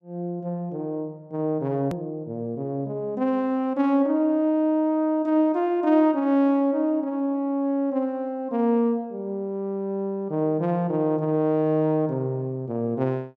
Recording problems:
click at an edit; at 2 s

